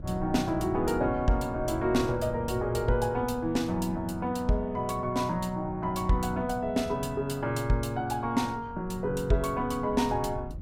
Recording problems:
wind noise; below 150 Hz, SNR 13 dB

